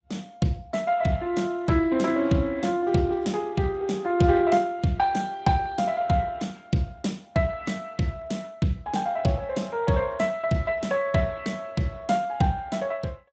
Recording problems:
lossy compression; Speex, log-spectral distance 3 dB, nothing above 7.8 kHz

